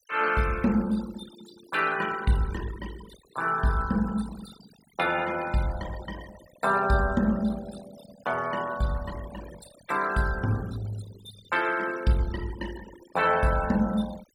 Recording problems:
noise reduction artefacts; signal-to-artefact ratio 16 dB

